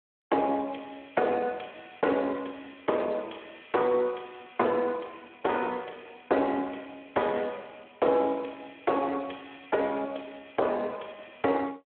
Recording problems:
phone line; 320 Hz to 3.7 kHz, Speex

